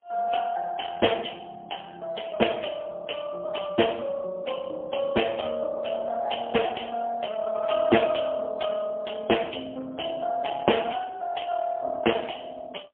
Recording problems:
telephone audio; 260 Hz to 3.3 kHz, AMR-NB, then MP3

